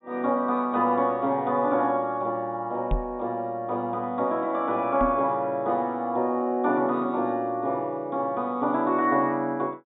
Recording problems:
treble missing; nothing above 4 kHz
microphone bump; at 3 s and at 5 s; peak +1 dB vs average level

